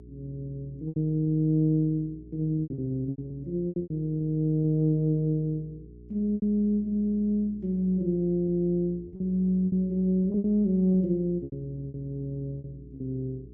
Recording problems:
electrical hum; 60 Hz, harmonics up to 420 Hz, SNR 20 dB
packet loss; 9% of the sound replaced, filled with repeated pitch periods

